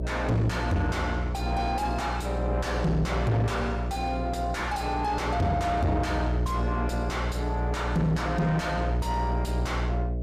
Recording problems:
distortion; soft clipping, signal-to-distortion ratio 6 dB
electrical hum; 60 Hz, harmonics up to 660 Hz, SNR 2 dB

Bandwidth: 15 kHz